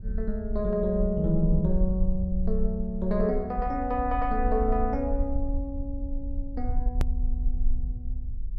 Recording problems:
low-frequency rumble; below 54 Hz, SNR 4 dB
hard cut with a click; at 7 s

